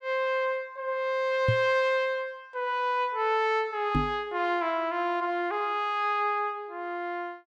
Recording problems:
microphone bump; at 1.5 s and at 4 s; peak +5 dB vs average level

